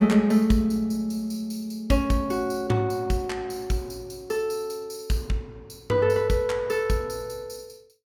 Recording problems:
none

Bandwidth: 18 kHz